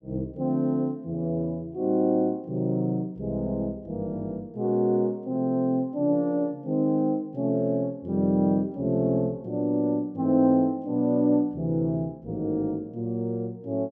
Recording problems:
none

